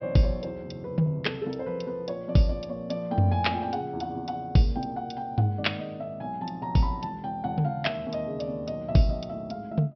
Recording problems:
low-pass filter; nothing above 5.5 kHz

